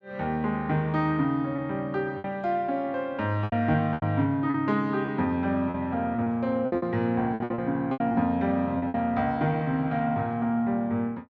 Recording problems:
packet loss; 8% of the sound replaced, filled with repeated pitch periods

